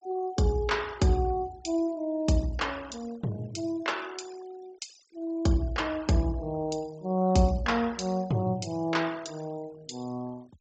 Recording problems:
treble cut off; nothing above 8 kHz
noise reduction artefacts; signal-to-artefact ratio 22 dB

